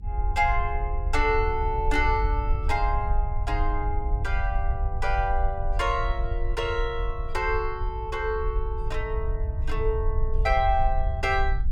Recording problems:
low-frequency rumble; below 62 Hz, SNR 2 dB

